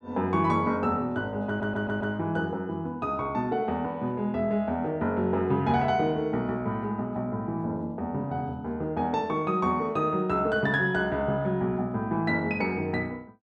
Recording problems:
stutter; at 1.5 s

